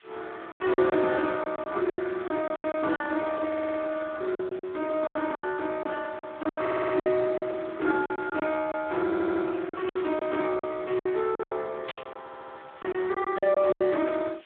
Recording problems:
telephone audio; 240 Hz to 3 kHz, Speex
background hiss; SNR 27 dB
packet loss; 13% of the sound replaced, filled with silence
stutter; 4 times, first at 3.5 s
burst of static; at 10 s and at 12 s; peak -2 dB vs average level

